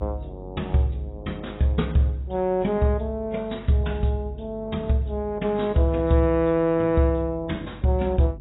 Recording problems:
codec artefacts; AAC, log-spectral distance 2 dB, nothing above 3.8 kHz
hum; 50 Hz, harmonics up to 400 Hz, SNR 20 dB

